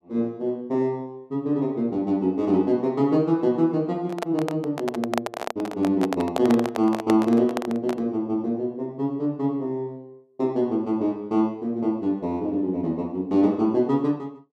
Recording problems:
microphone handling noise; from 4 to 8 s; peak +3 dB vs average level

